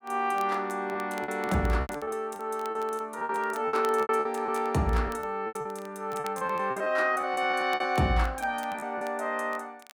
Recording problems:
crackling; vinyl, SNR 23 dB
packet loss; 14% of the sound replaced, filled with repeated pitch periods

